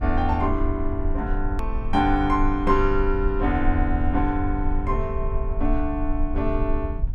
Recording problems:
rumble; below 50 Hz, SNR 4 dB
click at an edit; at 1.5 s

